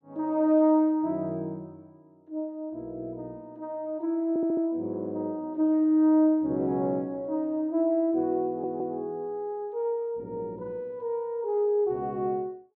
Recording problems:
stutter; at 4.5 s and at 8.5 s

